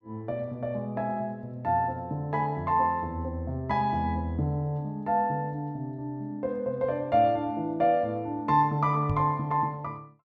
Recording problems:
microphone bump; at 9 s; peak +2 dB vs average level

